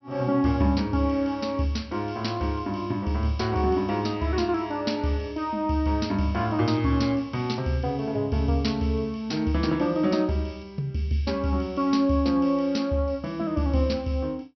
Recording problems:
treble cut off; nothing above 5.8 kHz

